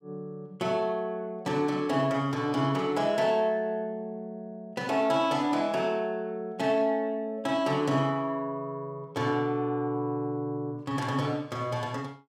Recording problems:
burst of static; at 11 s; peak -13 dB vs average level

